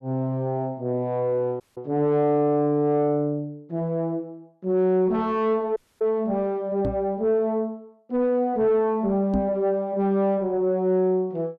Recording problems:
distorted audio; soft clipping, signal-to-distortion ratio 10 dB
dropout; at 1.5 s and at 6 s
microphone bump; at 7 s and at 9.5 s; peak 0 dB vs average level

